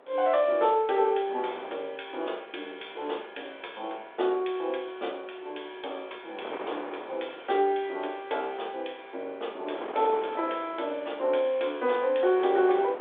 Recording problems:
phone line; 320 Hz to 3.6 kHz, G.726
wind noise; below 970 Hz, SNR 15 dB

